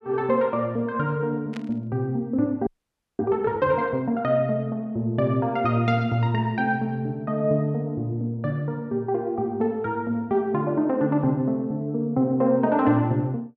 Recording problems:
static burst; at 1.5 s; peak -11 dB vs average level
audio freezing; at 2.5 s for 0.5 s

